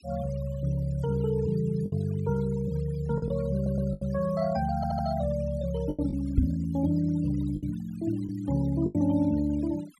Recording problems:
denoising artefacts; signal-to-artefact ratio 20 dB
packet loss; 5% of the sound replaced, filled with the last packet
audio stuttering; at 3.5 s and at 5 s
microphone thump; at 6.5 s; peak +9 dB vs average level

